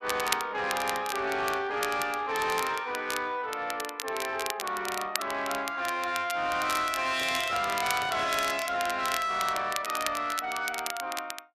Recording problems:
distortion; soft clipping, signal-to-distortion ratio 11 dB
crackle; vinyl, SNR 8 dB
microphone handling noise; from 7 to 8.5 s; peak -8 dB vs average level

